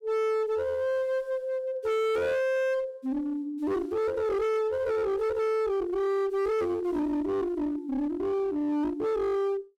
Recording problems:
distorted audio; hard clipping, uneven, signal-to-distortion ratio 7 dB

